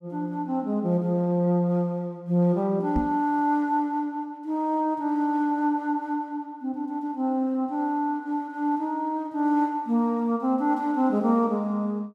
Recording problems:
microphone bump; at 3 s; peak +2 dB vs average level

